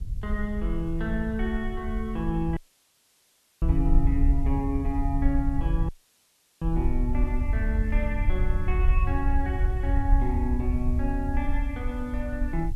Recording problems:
hiss; slope 0 dB per octave, SNR 30 dB
rumble; below 64 Hz, SNR -2 dB
dropout; at 2.5 s for 1 s and at 6 s for 0.5 s

